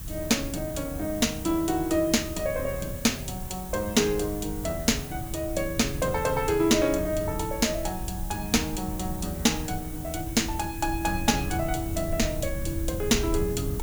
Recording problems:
hiss; slope 0 dB per octave, SNR 13 dB
low-frequency rumble; below 110 Hz, SNR 10 dB

